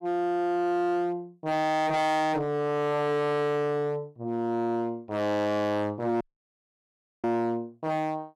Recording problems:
distorted audio; hard clipping, signal-to-distortion ratio 6 dB
audio cutting out; at 6 s for 1 s

